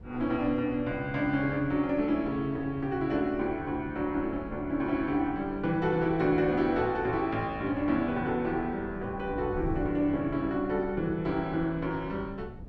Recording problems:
wind noise; below 160 Hz, SNR 16 dB

